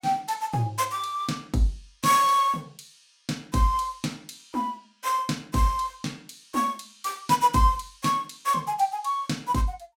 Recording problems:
none

